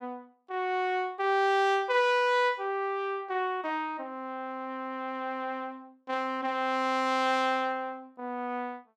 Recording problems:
none

